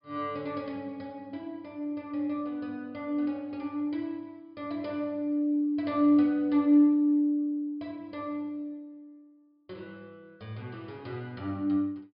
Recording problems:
low-pass filter; nothing above 5.5 kHz

